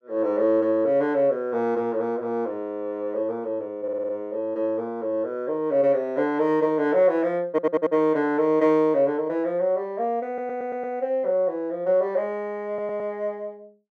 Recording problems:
stutter; 4 times, first at 4 s

